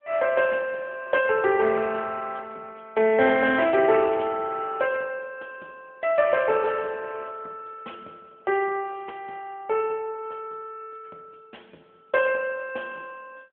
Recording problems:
telephone audio; 260 Hz to 3.2 kHz, AMR-NB

